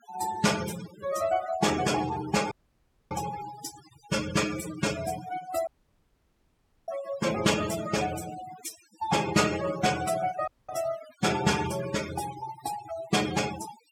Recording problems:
denoising artefacts; signal-to-artefact ratio 11 dB
dropout; at 2.5 s for 0.5 s, at 5.5 s for 1 s and at 10 s

